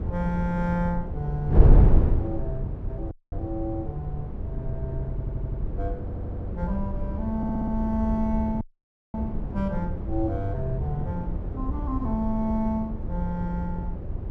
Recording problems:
wind on the microphone; below 100 Hz, SNR -2 dB
audio cutting out; at 3 s and at 8.5 s for 0.5 s
audio stuttering; at 5 s, at 6 s and at 7.5 s

